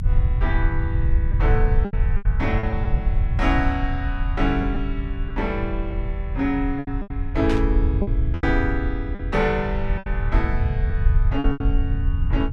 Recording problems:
rumble; below 78 Hz, SNR -2 dB
lost packets; 7% of the sound replaced, filled with repeated pitch periods
burst of static; at 7.5 s; peak -2 dB vs average level

